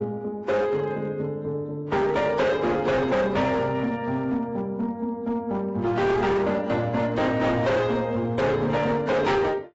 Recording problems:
codec artefacts; AAC, log-spectral distance 2 dB, nothing above 7.6 kHz
distorted audio; hard clipping, signal-to-distortion ratio 8 dB

